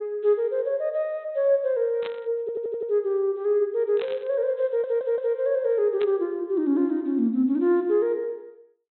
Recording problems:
low-pass filter; nothing above 4 kHz
burst of static; at 2 s, at 4 s and at 6 s; peak -9 dB vs average level
stutter; at 2.5 s and at 4.5 s

